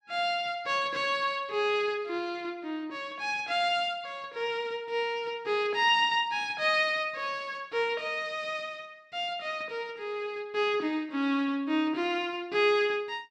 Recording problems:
none

